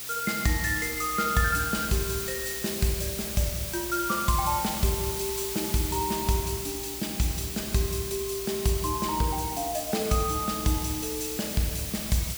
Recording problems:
hum; 60 Hz, harmonics up to 1.4 kHz, SNR 26 dB
hiss; SNR 4 dB

